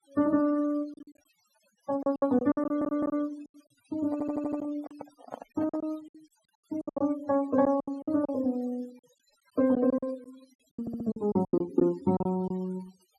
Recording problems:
noise reduction artefacts; signal-to-artefact ratio 22 dB
lost packets; 14% of the sound replaced, filled with silence
audio stuttering; at 2.5 s, at 4 s and at 11 s
handling noise; from 4 to 6 s; peak -6 dB vs average level

